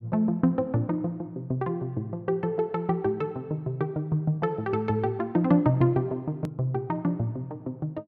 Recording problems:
hard cut with a click; at 6.5 s

